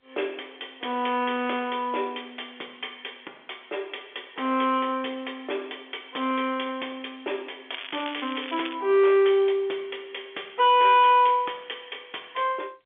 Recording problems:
telephone audio; 280 Hz to 3.5 kHz, G.711
distorted audio; hard clipping, signal-to-distortion ratio 12 dB
crackling; from 7.5 to 9 s; loose cable, SNR 12 dB

